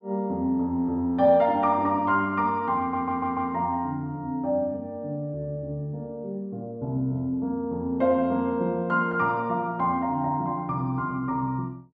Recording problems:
audio stuttering; at 3 s

